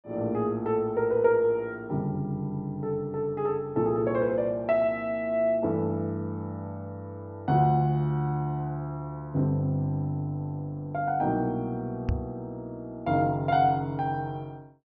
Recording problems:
treble missing; nothing above 6.6 kHz
microphone thump; at 12 s; peak +4 dB vs average level

